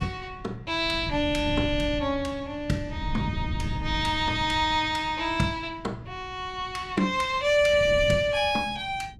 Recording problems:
wind on the microphone; below 150 Hz, SNR 11 dB

